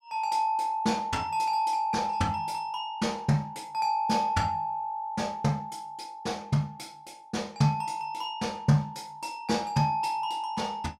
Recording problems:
none

